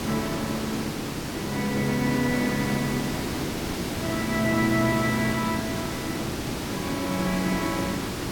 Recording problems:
background hiss; SNR 2 dB

